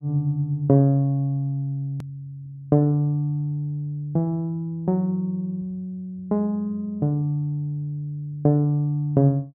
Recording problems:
click at an edit; at 2 s

